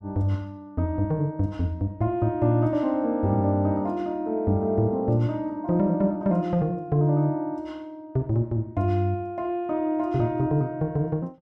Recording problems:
none

